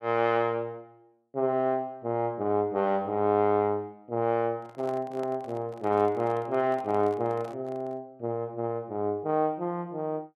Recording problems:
handling noise; from 4.5 to 8 s; peak -11 dB vs average level

